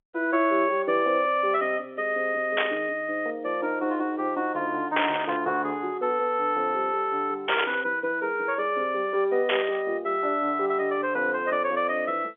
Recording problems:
telephone audio; 300 Hz to 3.5 kHz, G.711
burst of static; 4 times, first at 2.5 s; peak +4 dB vs average level

